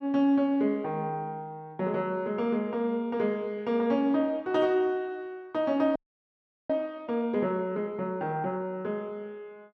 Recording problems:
frozen audio; at 6 s for 0.5 s

